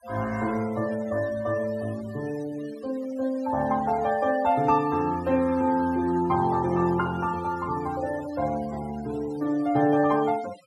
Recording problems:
denoising artefacts; signal-to-artefact ratio 18 dB

